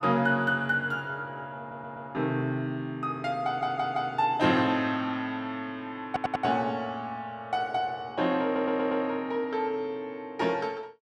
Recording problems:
audio stuttering; 4 times, first at 1.5 s

